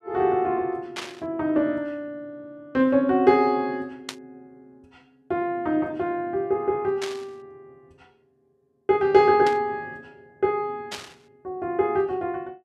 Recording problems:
burst of static; 5 times, first at 1 s; peak -4 dB vs average level

